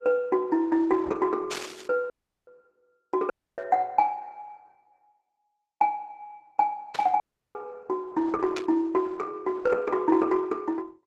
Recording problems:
codec artefacts; Opus, log-spectral distance 2 dB
static burst; 4 times, first at 1.5 s; peak -6 dB vs average level
dropout; at 2 s, at 3.5 s and at 7 s

